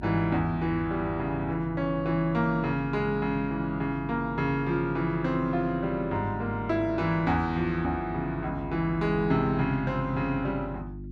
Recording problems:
electrical hum; 50 Hz, harmonics up to 350 Hz, SNR 13 dB

